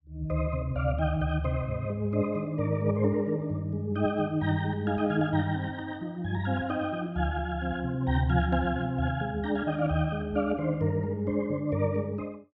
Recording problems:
none

